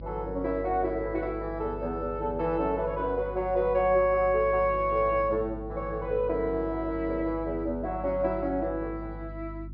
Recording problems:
treble cut off; nothing above 5.1 kHz
hum; 50 Hz, harmonics up to 350 Hz, SNR 13 dB

